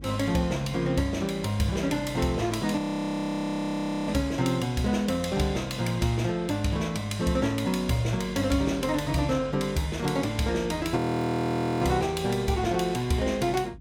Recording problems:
electrical hum; 50 Hz, harmonics up to 300 Hz, SNR 19 dB
audio freezing; at 3 s for 1.5 s and at 11 s for 1 s

